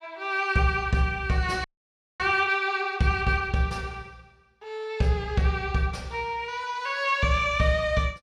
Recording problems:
frozen audio; at 1.5 s for 0.5 s

